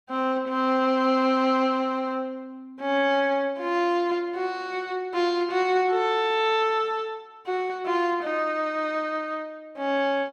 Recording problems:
none

